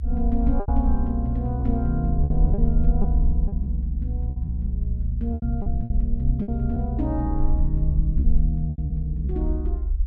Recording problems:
low-frequency rumble; below 66 Hz, SNR -3 dB
packet loss; 9% of the sound replaced, filled with repeated pitch periods

